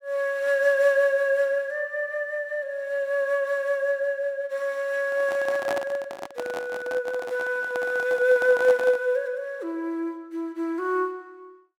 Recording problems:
handling noise; from 5 to 9 s; peak -1 dB vs average level

